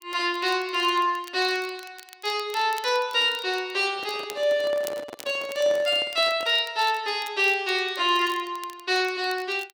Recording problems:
crackle; vinyl, SNR 21 dB
handling noise; from 4 to 6.5 s; peak -11 dB vs average level

